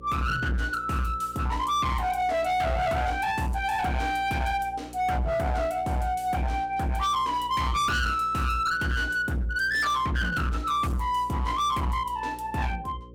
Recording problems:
distortion; hard clipping, uneven, signal-to-distortion ratio 7 dB
hum; 60 Hz, harmonics up to 540 Hz, SNR 20 dB

